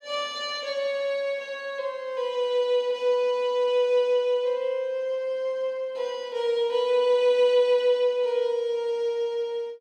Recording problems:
none

